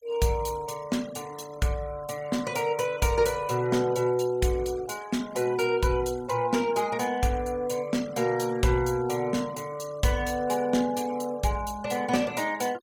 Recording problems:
denoising artefacts; signal-to-artefact ratio 19 dB

